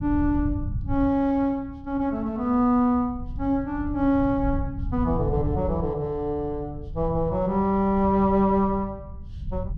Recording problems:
low-frequency rumble; below 110 Hz, SNR 10 dB

